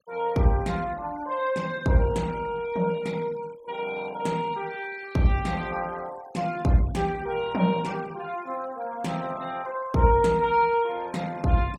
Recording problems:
noise reduction artefacts; signal-to-artefact ratio 23 dB

